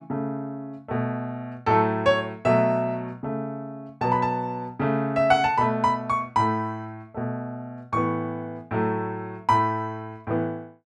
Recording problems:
none

